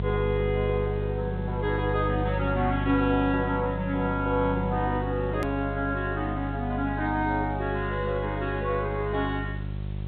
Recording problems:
low-pass filter; nothing above 4 kHz
electrical hum; 50 Hz, harmonics up to 550 Hz, SNR 4 dB
background hiss; SNR 27 dB
click at an edit; at 5.5 s

